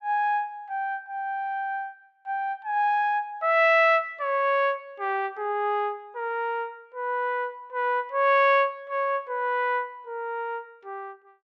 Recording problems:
none

